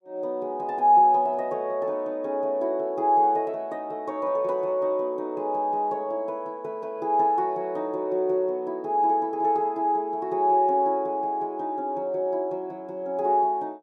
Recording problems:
none

